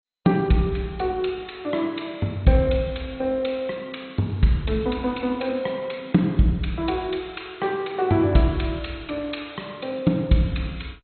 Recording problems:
codec artefacts; MP2, log-spectral distance 4 dB, nothing above 4.2 kHz

